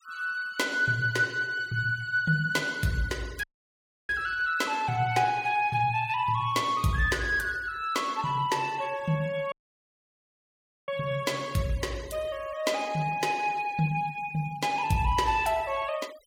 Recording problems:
denoising artefacts; signal-to-artefact ratio 21 dB
dropout; at 3.5 s for 0.5 s and at 9.5 s for 1.5 s

